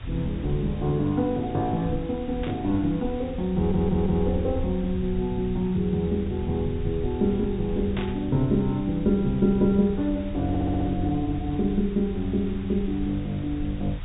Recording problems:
treble cut off; nothing above 4 kHz
background hiss; SNR 22 dB
rumble; below 86 Hz, SNR 11 dB
burst of static; at 2.5 s and at 8 s; peak -7 dB vs average level
stutter; at 3.5 s and at 10 s

